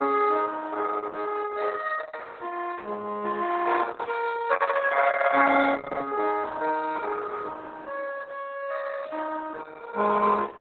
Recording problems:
lossy codec; Opus, then Opus, log-spectral distance 5 dB

